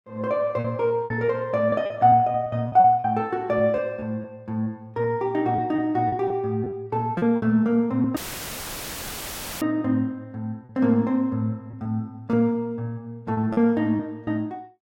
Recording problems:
lost packets; 8% of the sound replaced, filled with repeated pitch periods
audio cutting out; at 8 s for 1.5 s; filled with static

